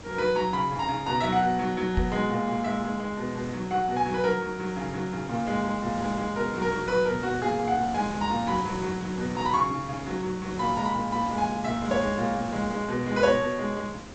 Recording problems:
treble cut off; nothing above 8 kHz
background hiss; slope -5 dB per octave, SNR 13 dB
microphone thump; at 2 s; peak +4 dB vs average level

